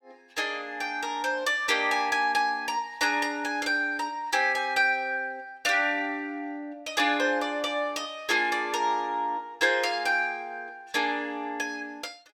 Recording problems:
none

